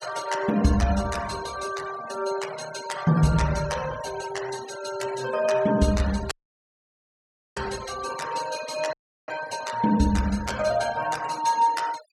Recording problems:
denoising artefacts; signal-to-artefact ratio 16 dB
audio cutting out; at 6.5 s for 1.5 s and at 9 s

